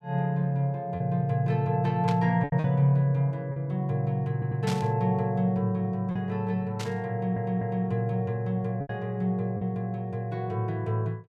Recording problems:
lost packets; 3% of the sound replaced, filled with repeated pitch periods
static burst; at 2 s, at 4.5 s and at 7 s; peak -4 dB vs average level
audio stuttering; at 4.5 s and at 7 s

